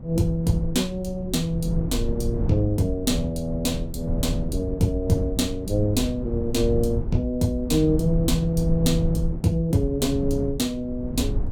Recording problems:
rumble; below 120 Hz, SNR 6 dB

